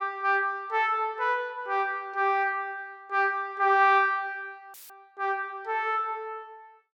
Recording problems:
dropout; at 4.5 s; filled with static

